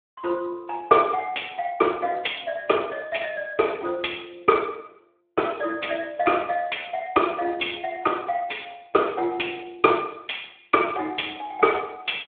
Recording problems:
phone line; 260 Hz to 3.6 kHz, Speex

